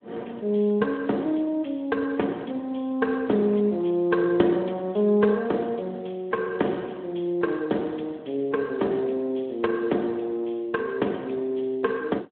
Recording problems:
telephone audio; 170 Hz to 3.6 kHz, Speex

